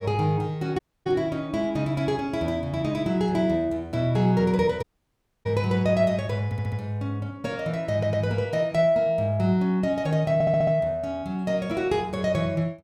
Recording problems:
audio cutting out; at 1 s and at 5 s for 0.5 s
audio stuttering; at 6.5 s, at 8 s and at 10 s

